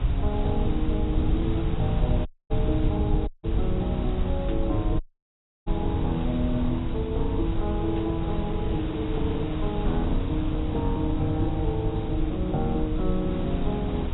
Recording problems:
codec artefacts; AAC, log-spectral distance 4 dB, nothing above 11.3 kHz
background hiss; SNR 9 dB
low-frequency rumble; below 90 Hz, SNR 1 dB
audio cutting out; at 2.5 s, at 3.5 s and at 5 s for 0.5 s
static burst; at 4.5 s and at 8 s; peak -11 dB vs average level

